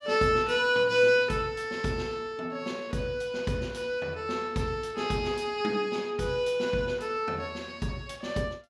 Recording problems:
none

